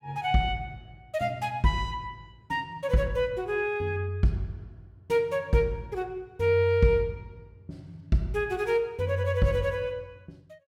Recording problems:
none

